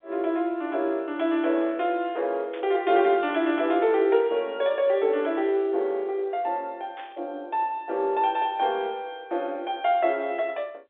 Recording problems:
telephone audio; 300 Hz to 3.7 kHz, G.711
burst of static; at 2.5 s and at 7 s; peak -14 dB vs average level

